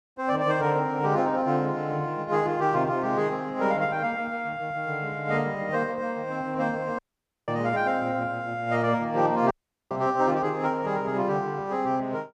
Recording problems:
audio cutting out; at 7 s and at 9.5 s

